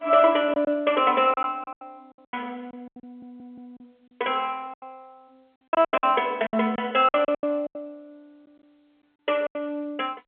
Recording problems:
phone line; 280 Hz to 3.4 kHz, G.711
lost packets; 14% of the sound replaced, filled with silence
stutter; at 3 s

